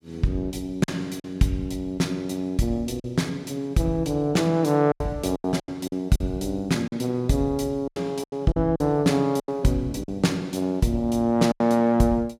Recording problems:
lost packets; 7% of the sound replaced, filled with silence

